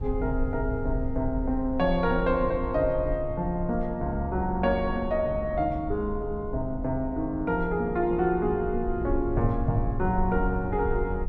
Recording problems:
low-frequency rumble; below 72 Hz, SNR 8 dB

